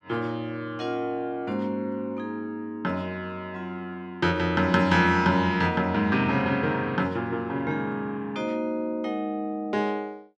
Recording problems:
none

